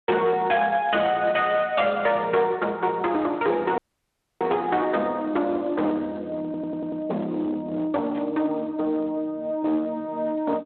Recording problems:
phone line; 260 Hz to 3.7 kHz, Speex
distorted audio; hard clipping, uneven, signal-to-distortion ratio 12 dB
audio cutting out; at 4 s for 0.5 s
audio stuttering; at 6.5 s
static burst; at 8 s; peak -16 dB vs average level

